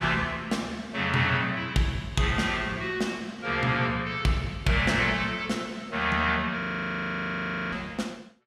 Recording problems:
audio freezing; at 6.5 s for 1 s

